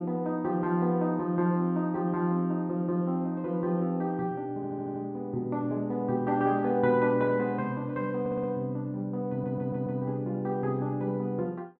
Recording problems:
stutter; at 4.5 s, at 8 s and at 9.5 s

